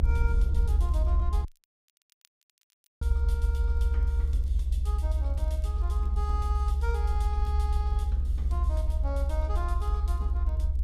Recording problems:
low-frequency rumble; below 70 Hz, strongest tone 68 Hz, SNR -12 dB
crackle; vinyl, SNR 29 dB
dropout; at 1.5 s for 1.5 s

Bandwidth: 15.5 kHz